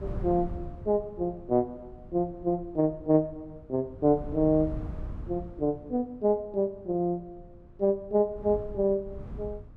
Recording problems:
wind on the microphone; below 130 Hz, SNR 15 dB

